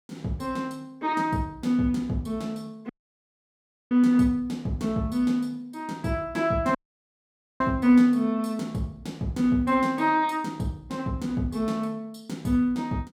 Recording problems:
audio cutting out; at 3 s for 1 s and at 7 s for 1 s

